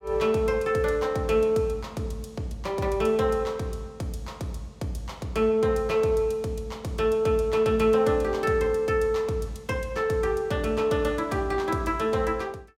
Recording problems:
none

